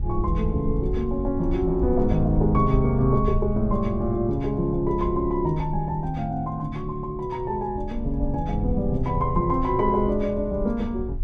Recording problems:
wind on the microphone; below 68 Hz, SNR 7 dB

